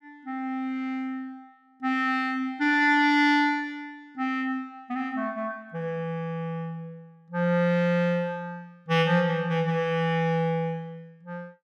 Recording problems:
none

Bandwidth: 14.5 kHz